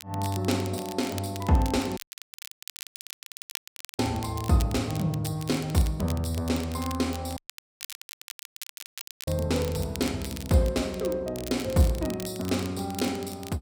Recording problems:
crackling; vinyl, SNR 14 dB
dropout; at 2 s for 2 s and at 7.5 s for 2 s

